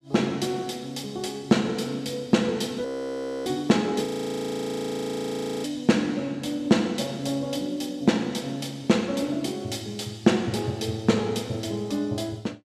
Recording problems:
frozen audio; at 3 s for 0.5 s and at 4 s for 1.5 s

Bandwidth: 14.5 kHz